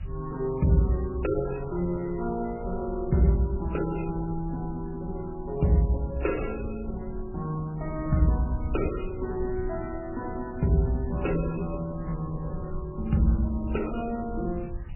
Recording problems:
codec artefacts; MP3, then MP3, log-spectral distance 4 dB, nothing above 2.8 kHz
background hiss; SNR 28 dB
low-frequency rumble; below 84 Hz, SNR 11 dB

